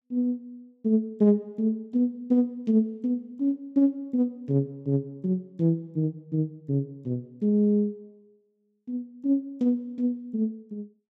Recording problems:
none

